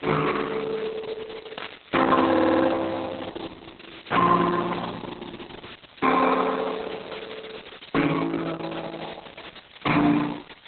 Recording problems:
lossy codec; Opus, then Opus, log-spectral distance 21 dB, nothing above 4 kHz
hiss; SNR 18 dB
burst of static; at 1.5 s, at 4.5 s and at 7.5 s; peak -6 dB vs average level
audio stuttering; at 2.5 s

